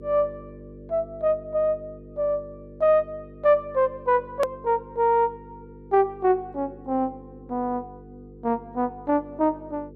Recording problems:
hum; 50 Hz, harmonics up to 500 Hz, SNR 20 dB
click at an edit; at 4.5 s

